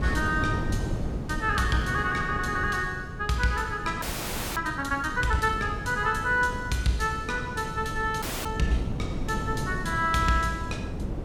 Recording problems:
hum; 50 Hz, harmonics up to 450 Hz, SNR 19 dB
wind on the microphone; below 240 Hz, SNR 7 dB
frozen audio; at 4 s for 0.5 s and at 8 s

